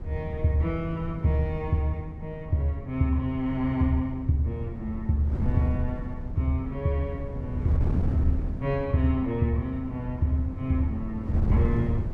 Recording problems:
wind on the microphone; below 130 Hz, SNR 5 dB

